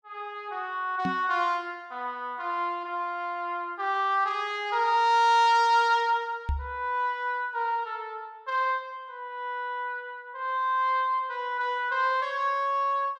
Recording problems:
microphone thump; at 1 s and at 6.5 s; peak 0 dB vs average level

